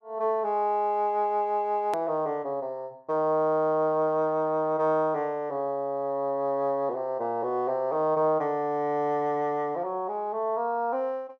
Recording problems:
click at an edit; at 2 s

